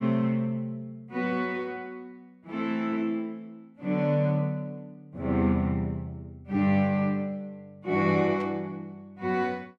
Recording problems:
burst of static; at 8.5 s; peak -15 dB vs average level

